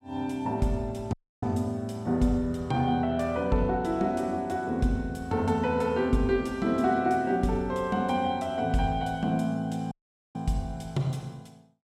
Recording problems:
audio cutting out; at 1 s and at 10 s

